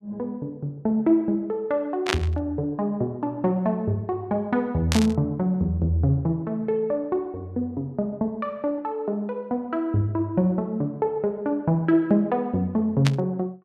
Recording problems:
burst of static; at 2 s, at 5 s and at 13 s; peak +4 dB vs average level

